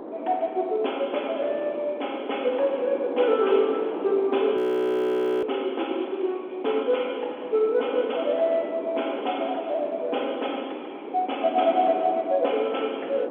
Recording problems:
telephone audio; 260 Hz to 3.4 kHz, G.711
wind on the microphone; below 620 Hz, SNR 10 dB
frozen audio; at 4.5 s for 1 s

